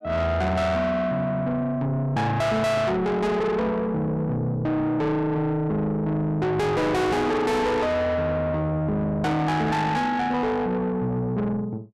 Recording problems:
distorted audio; soft clipping, signal-to-distortion ratio 6 dB

